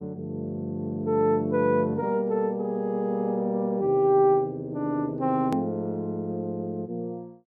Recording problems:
hard cut with a click; at 5.5 s

